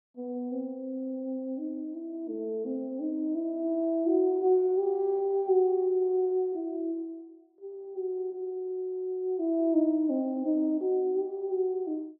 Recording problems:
none

